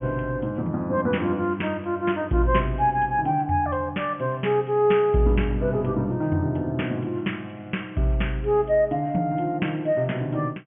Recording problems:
low-pass filter; nothing above 3.2 kHz

